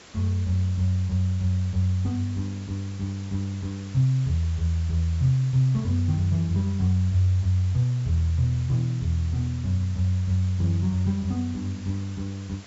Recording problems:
treble cut off; nothing above 8 kHz
background hiss; slope -2 dB per octave, SNR 21 dB

